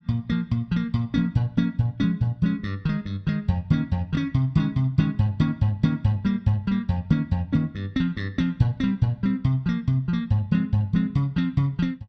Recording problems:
none

